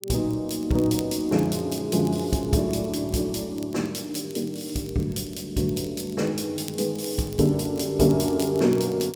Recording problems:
crackling; vinyl, SNR 21 dB

